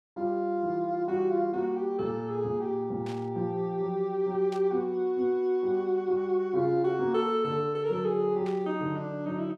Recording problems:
burst of static; at 3 s, at 4.5 s and at 8.5 s; peak -13 dB vs average level

